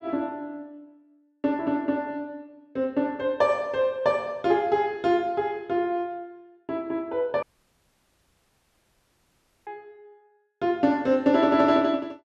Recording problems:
dropout; at 7.5 s for 2 s

